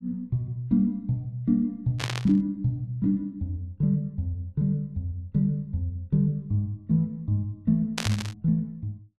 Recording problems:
burst of static; at 2 s and at 8 s; peak +2 dB vs average level

